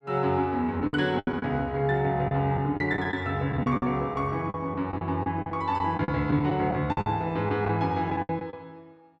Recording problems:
lost packets; 11% of the sound replaced, filled with the last packet

